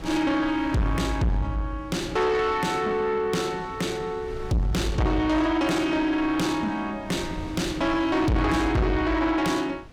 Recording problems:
distorted audio; soft clipping, signal-to-distortion ratio 7 dB
wind on the microphone; below 370 Hz, SNR 17 dB

